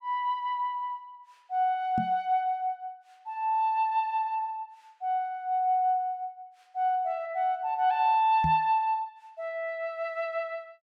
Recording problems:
knock on the microphone; at 2 s and at 8.5 s; peak 0 dB vs average level

